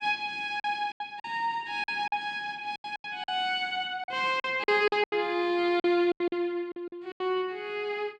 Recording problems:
packet loss; 12% of the sound replaced, filled with silence

